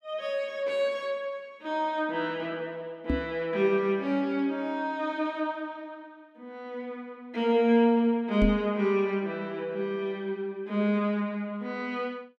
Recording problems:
microphone bump; at 3 s and at 8.5 s; peak +4 dB vs average level

